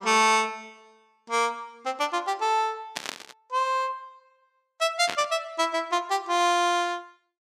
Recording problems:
burst of static; at 3 s and at 5 s; peak -1 dB vs average level

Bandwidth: 15 kHz